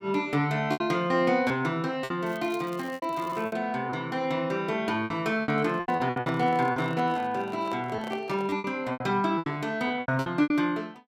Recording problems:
lost packets; 13% of the sound replaced, filled with repeated pitch periods
crackle; from 2.5 to 3.5 s; loose cable, SNR 23 dB
handling noise; from 5.5 to 8.5 s; peak -6 dB vs average level

